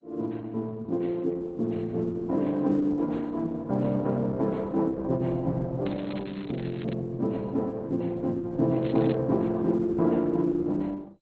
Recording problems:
codec artefacts; MP2, then Opus, log-spectral distance 3 dB, nothing above 7.6 kHz
crackling; from 6 to 7 s and at 9 s; loose cable, SNR 21 dB

